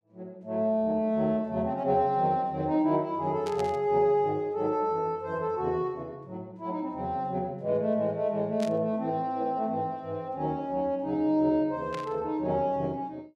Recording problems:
static burst; at 3.5 s, at 8.5 s and at 12 s; peak -9 dB vs average level

